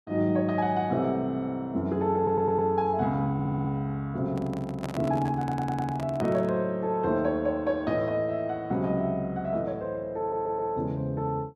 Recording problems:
stutter; 4 times, first at 2 s
handling noise; from 4.5 to 6.5 s; peak -4 dB vs average level

